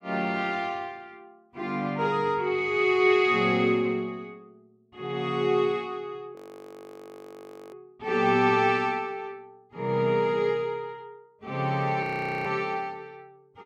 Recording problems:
audio freezing; at 6.5 s for 1.5 s and at 12 s

